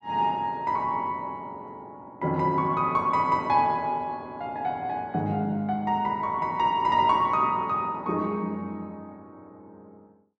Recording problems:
none

